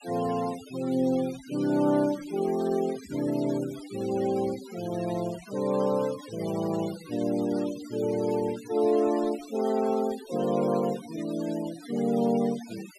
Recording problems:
noise reduction artefacts; signal-to-artefact ratio 16 dB

